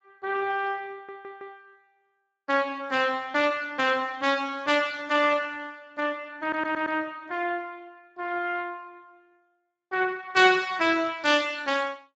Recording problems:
codec artefacts; Speex, log-spectral distance 4 dB, nothing above 7.6 kHz
stutter; at 1 s and at 6.5 s

